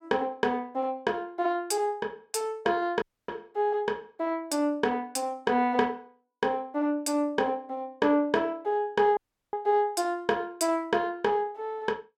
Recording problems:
dropout; at 3 s and at 9 s

